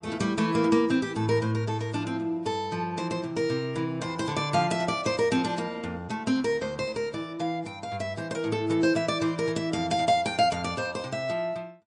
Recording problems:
lossy codec; MP3, log-spectral distance 2 dB, nothing above 8.5 kHz

